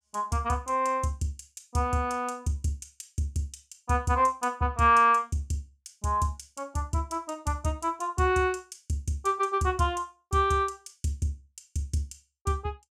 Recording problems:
none

